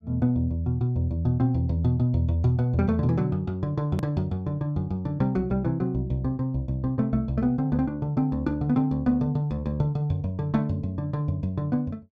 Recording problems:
click at an edit; at 4 s

